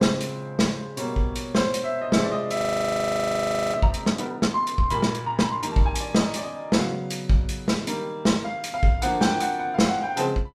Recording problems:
frozen audio; at 2.5 s for 1 s

